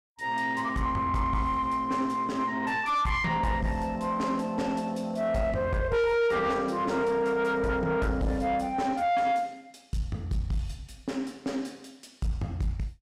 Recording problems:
distortion; soft clipping, signal-to-distortion ratio 6 dB

